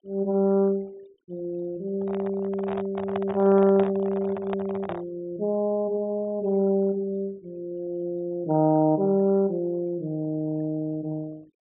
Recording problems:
treble cut off; nothing above 4 kHz
denoising artefacts; signal-to-artefact ratio 27 dB
handling noise; from 2 to 5 s; peak -2 dB vs average level

